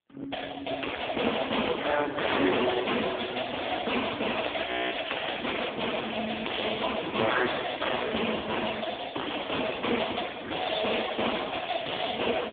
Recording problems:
phone line; 240 Hz to 3.6 kHz, AMR-NB
distortion; hard clipping, uneven, signal-to-distortion ratio 9 dB
crackle; from 4.5 to 5.5 s; loose cable, SNR 5 dB
frozen audio; at 4.5 s

